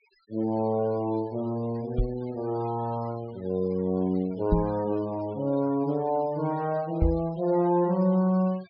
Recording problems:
treble missing; nothing above 5.5 kHz
noise reduction artefacts; signal-to-artefact ratio 23 dB
microphone bump; at 2 s, at 4.5 s and at 7 s; peak +6 dB vs average level

